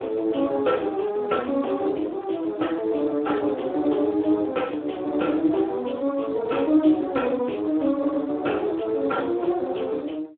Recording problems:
telephone audio; 260 Hz to 3.7 kHz, Speex

